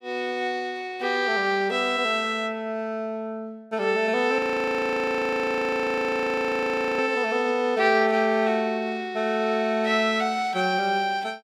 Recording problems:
frozen audio; at 4.5 s for 2.5 s

